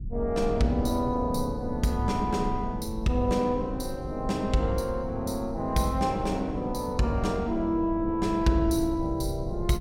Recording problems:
rumble; below 100 Hz, SNR 10 dB

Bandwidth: 16.5 kHz